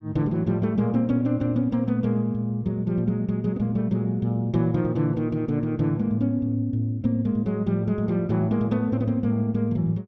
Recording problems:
none

